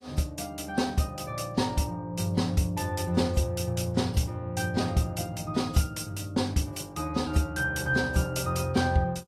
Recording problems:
lossy codec; AAC, log-spectral distance 3 dB

